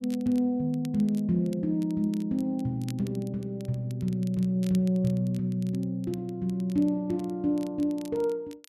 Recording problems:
crackling; vinyl, SNR 25 dB

